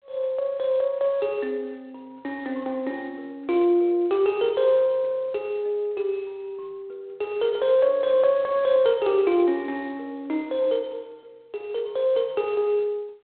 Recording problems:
phone line; 300 Hz to 3.6 kHz, G.726

